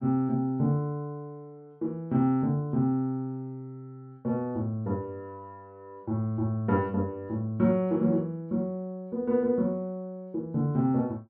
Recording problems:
none

